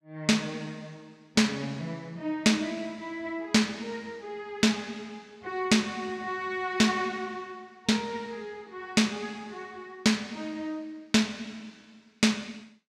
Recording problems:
none

